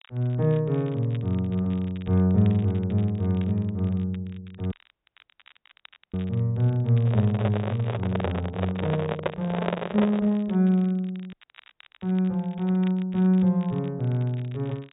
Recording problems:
low-pass filter; nothing above 4 kHz
crackling; vinyl, SNR 27 dB
dropout; at 4.5 s for 1.5 s and at 11 s for 0.5 s
microphone handling noise; from 7 to 10 s; peak +3 dB vs average level

